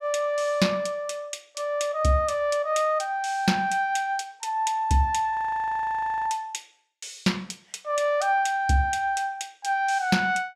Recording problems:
frozen audio; at 5.5 s for 1 s

